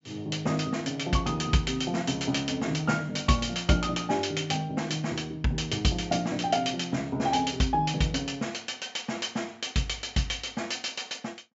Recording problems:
treble missing; nothing above 8 kHz

